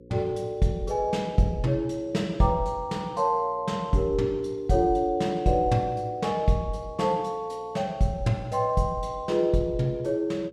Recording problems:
hum; 60 Hz, harmonics up to 540 Hz, SNR 25 dB

